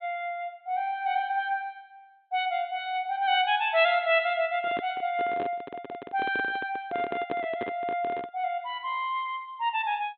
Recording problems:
treble missing; nothing above 4 kHz
microphone handling noise; from 4.5 to 8.5 s; peak -2 dB vs average level
stutter; at 5.5 s

